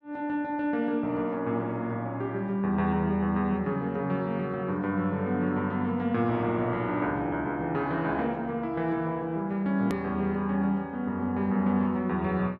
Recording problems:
edit click; at 10 s

